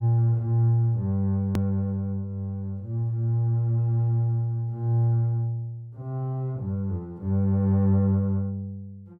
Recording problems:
click at an edit; at 1.5 s

